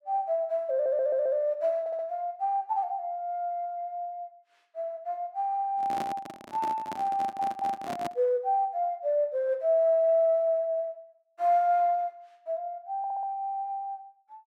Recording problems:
stutter; 4 times, first at 0.5 s
microphone handling noise; from 6 to 8 s; peak -3 dB vs average level

